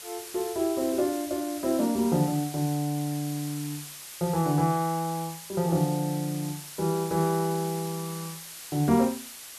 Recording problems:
hiss; slope +2 dB per octave, SNR 12 dB

